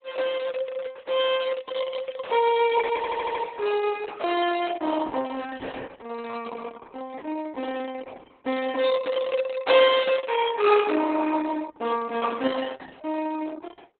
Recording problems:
lossy codec; Opus, log-spectral distance 5 dB
stutter; at 3 s

